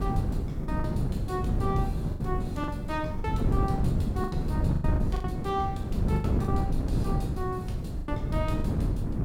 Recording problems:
electrical hum; 50 Hz, harmonics up to 550 Hz, SNR 16 dB
hiss; SNR 28 dB
wind on the microphone; below 200 Hz, SNR -6 dB
lost packets; 8% of the sound replaced, filled with the last packet

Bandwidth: 17 kHz